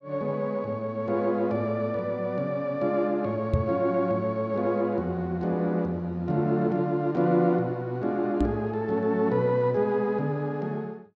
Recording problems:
microphone bump; at 3.5 s and at 8.5 s; peak +6 dB vs average level

